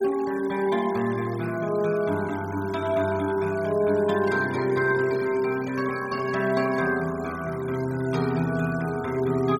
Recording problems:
denoising artefacts; signal-to-artefact ratio 18 dB

